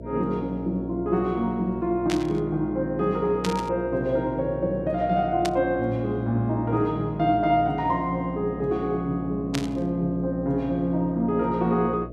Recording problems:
hum; 60 Hz, harmonics up to 660 Hz, SNR 13 dB
burst of static; 4 times, first at 2 s; peak -1 dB vs average level

